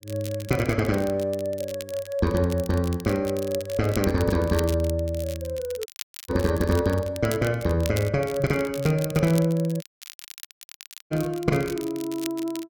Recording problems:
crackle; vinyl, SNR 15 dB
dropout; at 6 s and at 10 s for 1.5 s

